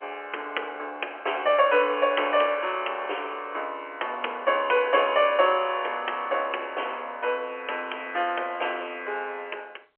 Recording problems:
telephone audio; 340 Hz to 3.2 kHz, G.711

